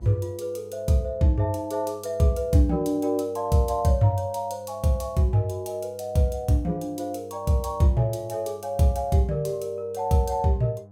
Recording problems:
hum; 50 Hz, harmonics up to 800 Hz, SNR 24 dB

